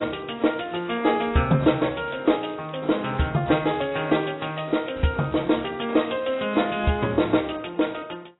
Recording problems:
lossy compression; AAC, log-spectral distance 8 dB, nothing above 3.8 kHz
crackle; from 2 to 4.5 s and from 5 to 7 s; loose cable, SNR 29 dB

